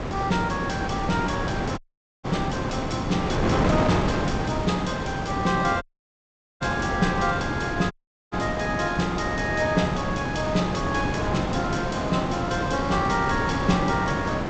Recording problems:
lossy compression; G.722, log-spectral distance 4 dB, nothing above 7.8 kHz
wind on the microphone; below 850 Hz, SNR 1 dB
audio cutting out; at 2 s, at 6 s for 1 s and at 8 s

